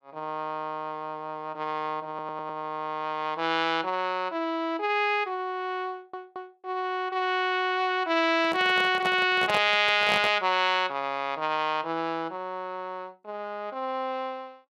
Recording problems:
stutter; at 2 s and at 6 s
handling noise; from 8.5 to 10 s; peak 0 dB vs average level

